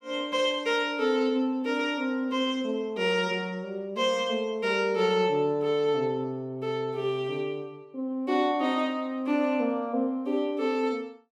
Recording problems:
none

